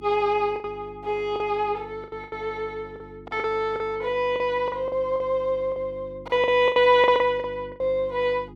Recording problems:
mains hum; 50 Hz, harmonics up to 350 Hz, SNR 21 dB
lost packets; 12% of the sound replaced, filled with the last packet

